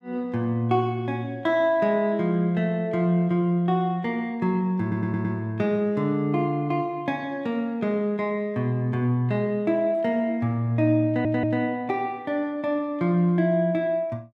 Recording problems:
stutter; at 5 s and at 11 s

